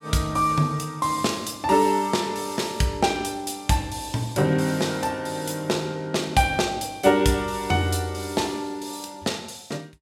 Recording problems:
none

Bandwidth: 16.5 kHz